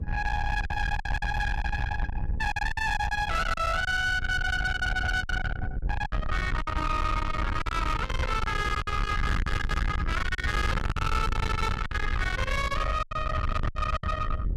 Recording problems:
distorted audio; soft clipping, signal-to-distortion ratio 7 dB
hum; 60 Hz, harmonics up to 540 Hz, SNR 21 dB
wind on the microphone; below 1.2 kHz, SNR 3 dB
packet loss; 9% of the sound replaced, filled with silence

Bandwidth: 14.5 kHz